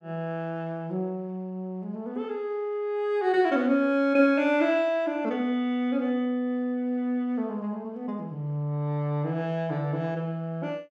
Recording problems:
none

